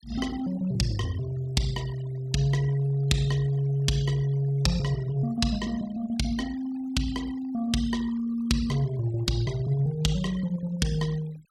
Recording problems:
noise reduction artefacts; signal-to-artefact ratio 20 dB

